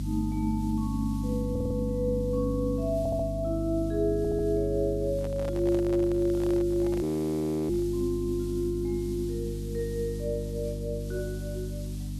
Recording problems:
hum; 50 Hz, harmonics up to 300 Hz, SNR 5 dB
hiss; SNR 22 dB
stutter; at 1.5 s, at 3 s and at 4 s
handling noise; from 5 to 8 s; peak -7 dB vs average level
frozen audio; at 7 s for 0.5 s

